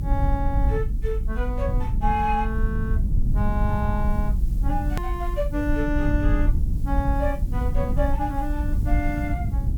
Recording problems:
hiss; slope 0 dB per octave, SNR 25 dB
low-frequency rumble; below 82 Hz, SNR -3 dB
hard cut with a click; at 5 s

